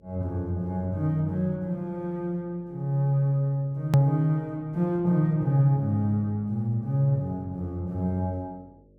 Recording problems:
electrical hum; 50 Hz, harmonics up to 600 Hz, SNR 29 dB
hard cut with a click; at 4 s

